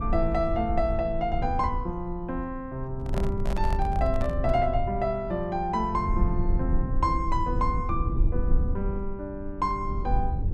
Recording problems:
rumble; below 70 Hz, SNR 2 dB
microphone handling noise; from 3 to 4.5 s; peak -1 dB vs average level

